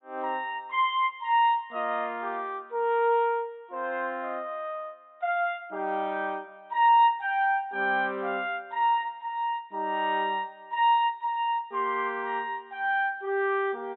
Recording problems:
treble missing; nothing above 3.8 kHz

